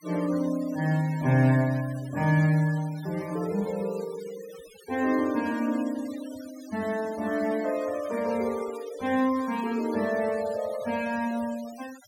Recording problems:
noise reduction artefacts; signal-to-artefact ratio 19 dB

